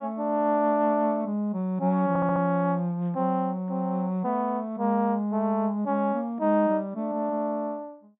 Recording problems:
low-pass filter; nothing above 4 kHz
stutter; at 2 s

